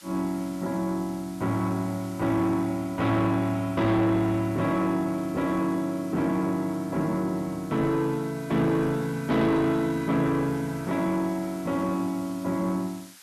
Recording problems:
distorted audio; soft clipping, signal-to-distortion ratio 11 dB
hiss; SNR 22 dB

